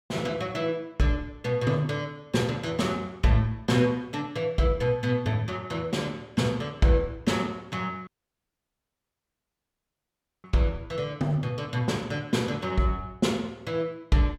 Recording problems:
dropout; at 8 s for 2.5 s

